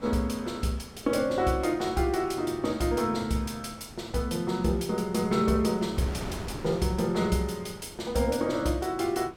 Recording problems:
wind noise; below 720 Hz, SNR 16 dB

